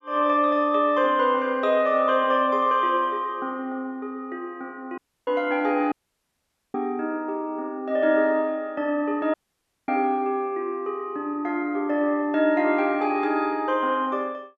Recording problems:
audio cutting out; at 5 s, at 6 s for 1 s and at 9.5 s for 0.5 s

